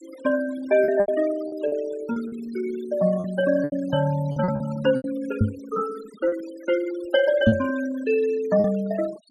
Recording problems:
noise reduction artefacts; signal-to-artefact ratio 16 dB
lost packets; 8% of the sound replaced, filled with repeated pitch periods
microphone bump; at 5.5 s and at 7.5 s; peak +9 dB vs average level

